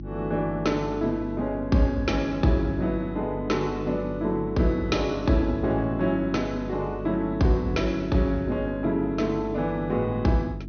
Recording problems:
treble cut off; nothing above 6.2 kHz
hum; 50 Hz, harmonics up to 350 Hz, SNR 11 dB

